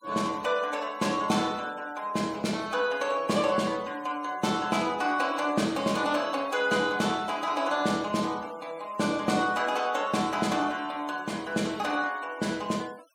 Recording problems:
noise reduction artefacts; signal-to-artefact ratio 22 dB

